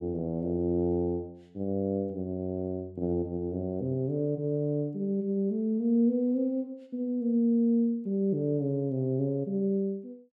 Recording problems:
none

